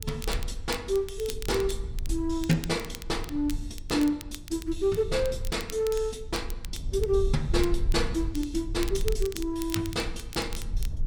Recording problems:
low-frequency rumble; below 56 Hz, SNR 7 dB
crackle; vinyl, SNR 14 dB

